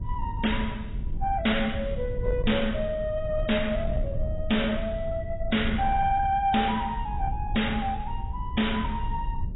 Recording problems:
codec artefacts; AAC, log-spectral distance 3 dB, nothing above 3.8 kHz
distorted audio; soft clipping, signal-to-distortion ratio 11 dB
rumble; below 88 Hz, SNR 6 dB

